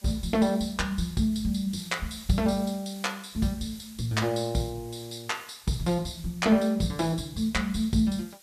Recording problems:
hiss; slope +1 dB per octave, SNR 21 dB

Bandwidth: 14.5 kHz